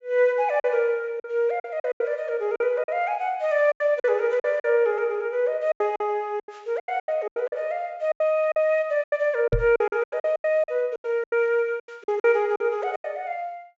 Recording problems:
treble missing; nothing above 8 kHz
lost packets; 15% of the sound replaced, filled with silence
knock on the microphone; at 9.5 s; peak +3 dB vs average level

